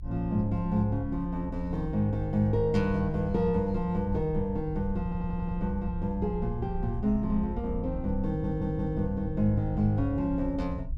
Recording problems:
low-frequency rumble; below 68 Hz, SNR 9 dB
stutter; at 5 s and at 8.5 s

